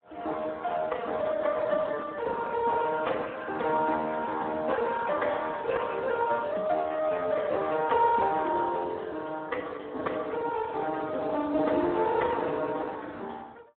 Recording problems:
telephone audio; 260 Hz to 2 kHz, Speex

